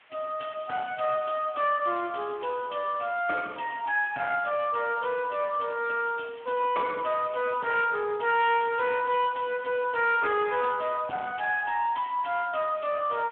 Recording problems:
phone line; 300 Hz to 3 kHz, Speex
distortion; soft clipping, signal-to-distortion ratio 11 dB
background hiss; SNR 28 dB

